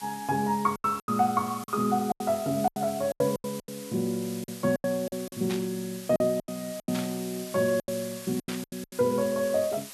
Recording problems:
hiss; slope +2 dB per octave, SNR 13 dB
packet loss; 13% of the sound replaced, filled with silence
static burst; at 5.5 s, at 7 s and at 8.5 s; peak -4 dB vs average level

